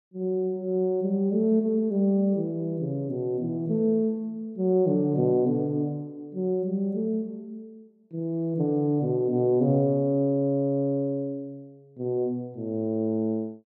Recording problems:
none

